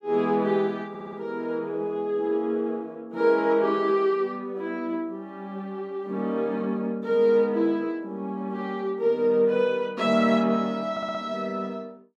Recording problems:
stutter; at 1 s and at 11 s

